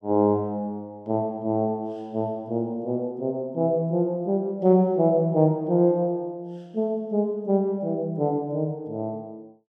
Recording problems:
none

